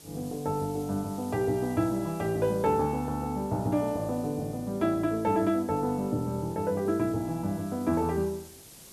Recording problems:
background hiss; SNR 20 dB

